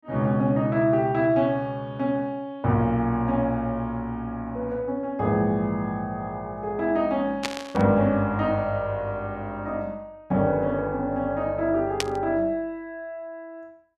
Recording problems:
static burst; at 7.5 s and at 12 s; peak +4 dB vs average level

